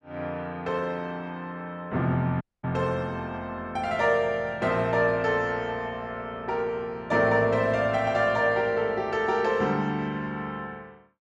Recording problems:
dropout; at 2.5 s

